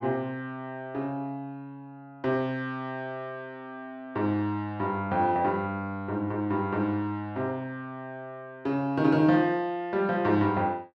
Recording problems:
none

